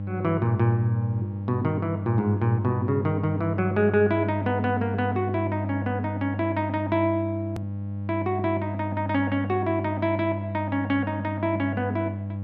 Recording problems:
hum; 50 Hz, harmonics up to 600 Hz, SNR 5 dB
edit click; at 7.5 s

